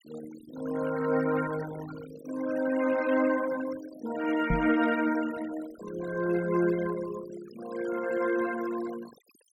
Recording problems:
denoising artefacts; signal-to-artefact ratio 14 dB
microphone thump; at 4.5 s; peak +4 dB vs average level

